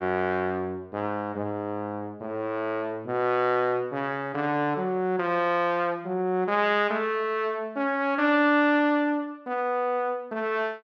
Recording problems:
none

